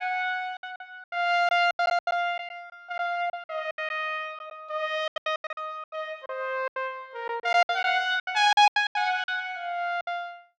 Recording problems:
lost packets; 16% of the sound replaced, filled with silence

